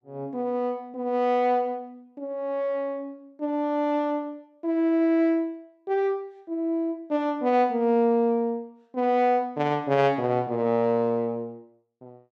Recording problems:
none

